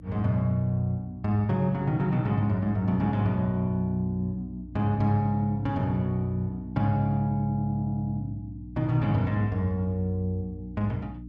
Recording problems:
hum; 60 Hz, harmonics up to 300 Hz, SNR 15 dB

